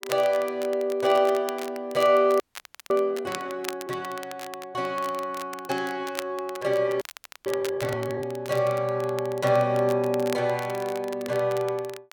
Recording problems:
crackling; vinyl, SNR 16 dB
frozen audio; at 2.5 s for 0.5 s and at 7 s

